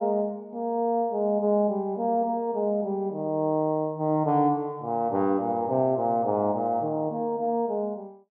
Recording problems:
none

